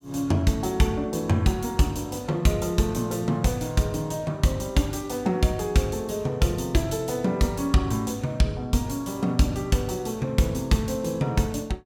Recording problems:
none

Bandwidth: 17.5 kHz